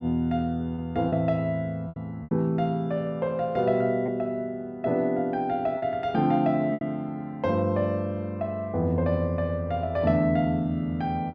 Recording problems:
lost packets; 3% of the sound replaced, filled with repeated pitch periods

